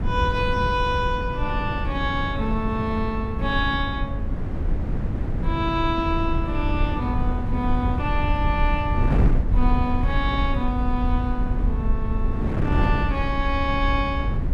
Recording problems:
low-frequency rumble; below 66 Hz, SNR 3 dB
wind noise; below 240 Hz, SNR 3 dB

